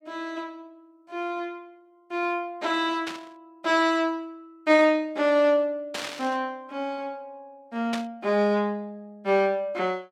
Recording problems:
burst of static; at 3 s, at 6 s and at 8 s; peak -3 dB vs average level

